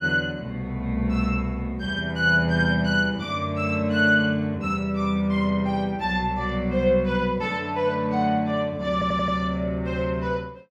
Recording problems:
audio stuttering; at 9 s

